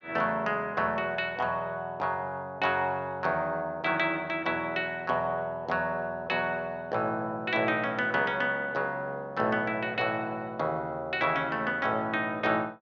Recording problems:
none

